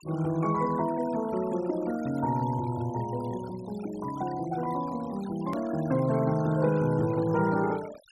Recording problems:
denoising artefacts; signal-to-artefact ratio 19 dB
edit click; at 5.5 s

